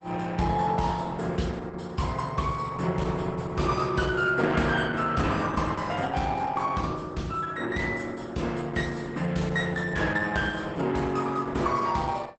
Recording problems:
codec artefacts; Opus, log-spectral distance 4 dB, nothing above 8.2 kHz

